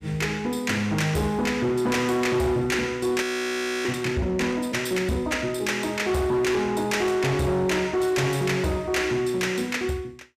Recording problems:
distorted audio; hard clipping, signal-to-distortion ratio 10 dB
frozen audio; at 3 s for 0.5 s

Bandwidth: 14.5 kHz